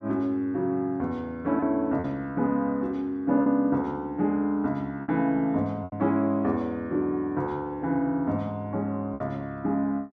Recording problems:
packet loss; 3% of the sound replaced, filled with repeated pitch periods

